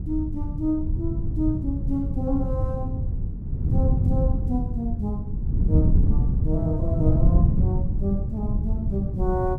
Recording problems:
wind on the microphone; below 130 Hz, SNR -4 dB

